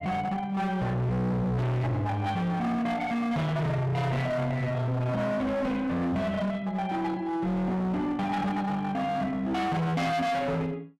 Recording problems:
distorted audio; hard clipping, uneven, signal-to-distortion ratio 5 dB

